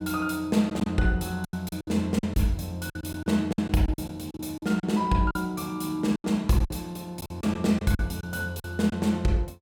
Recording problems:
packet loss; 11% of the sound replaced, filled with silence

